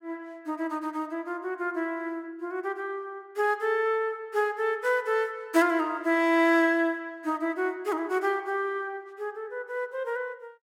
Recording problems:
none

